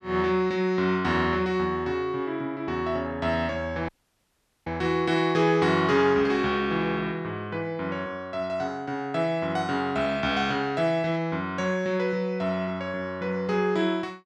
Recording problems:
audio cutting out; at 4 s for 1 s

